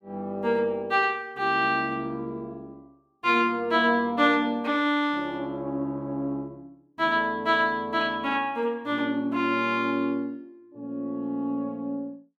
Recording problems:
none

